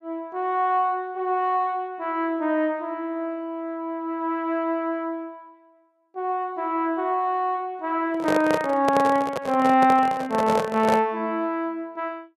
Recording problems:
microphone handling noise; from 8 to 11 s; peak +3 dB vs average level

